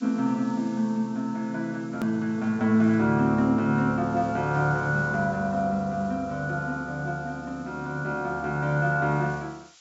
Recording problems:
treble cut off; nothing above 8 kHz
hiss; slope +4 dB per octave, SNR 28 dB
hard cut with a click; at 2 s

